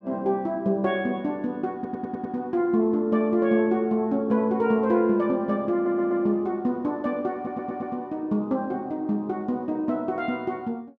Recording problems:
audio stuttering; at 2 s, at 5.5 s and at 7.5 s

